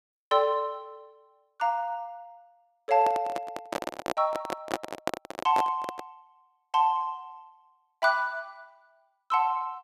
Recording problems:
microphone handling noise; from 3 to 6 s; peak +4 dB vs average level

